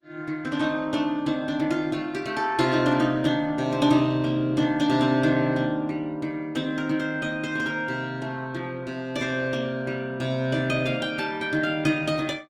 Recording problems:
lossy codec; Opus, log-spectral distance 3 dB, nothing above 19 kHz

